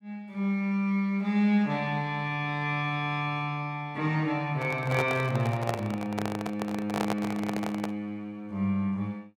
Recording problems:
microphone handling noise; from 4.5 to 8 s; peak +2 dB vs average level

